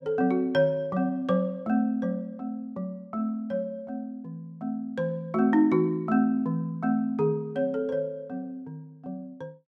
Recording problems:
none

